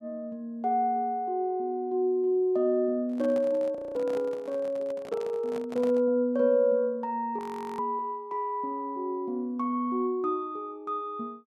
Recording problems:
handling noise; from 3 to 6 s; peak -8 dB vs average level
audio freezing; at 4 s and at 7.5 s

